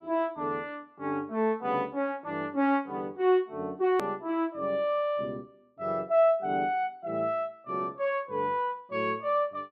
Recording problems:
edit click; at 4 s

